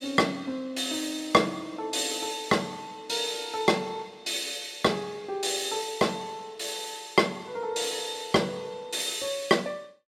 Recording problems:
none

